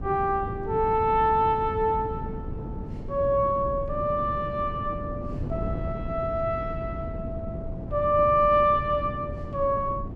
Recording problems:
wind on the microphone; below 230 Hz, SNR 10 dB

